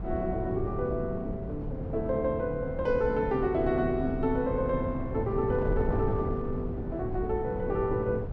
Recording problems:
wind noise; below 220 Hz, SNR 6 dB

